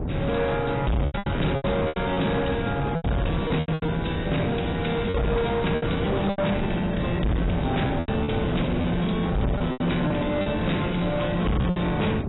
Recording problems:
lossy compression; AAC, log-spectral distance 5 dB, nothing above 3.9 kHz
distorted audio; soft clipping, signal-to-distortion ratio 6 dB
hum; 50 Hz, harmonics up to 500 Hz, SNR 20 dB
wind on the microphone; below 410 Hz, SNR 4 dB
lost packets; 10% of the sound replaced, filled with repeated pitch periods

